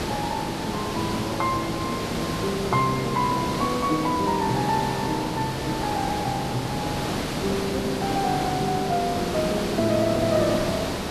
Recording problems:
hiss; slope -5 dB per octave, SNR 2 dB

